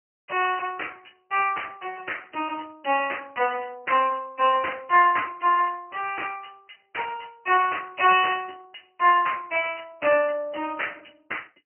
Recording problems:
telephone audio; 320 Hz to 2.8 kHz, Speex

